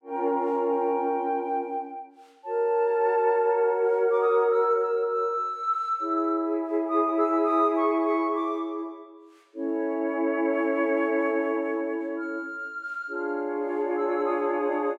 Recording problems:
none

